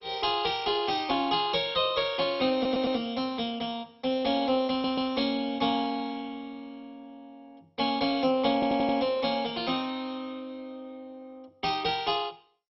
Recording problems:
lossy codec; MP2, log-spectral distance 5 dB, nothing above 5.5 kHz
audio stuttering; at 2.5 s, at 4.5 s and at 8.5 s

